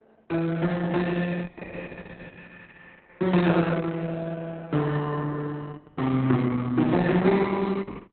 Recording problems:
lossy codec; Opus, log-spectral distance 5 dB, nothing above 4 kHz

